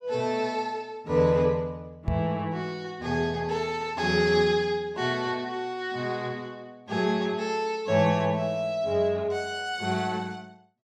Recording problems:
microphone thump; at 2 s; peak +2 dB vs average level

